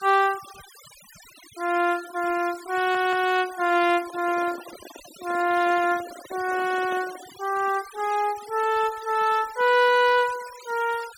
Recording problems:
denoising artefacts; signal-to-artefact ratio 18 dB
audio stuttering; at 3 s
handling noise; from 4 to 7.5 s; peak -12 dB vs average level

